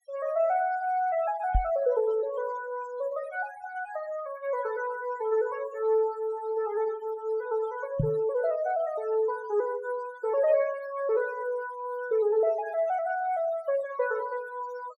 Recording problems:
denoising artefacts; signal-to-artefact ratio 20 dB
microphone thump; at 1.5 s and at 8 s; peak +6 dB vs average level

